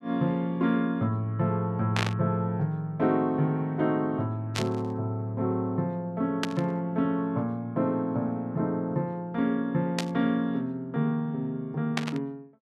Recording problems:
burst of static; 5 times, first at 2 s; peak +3 dB vs average level

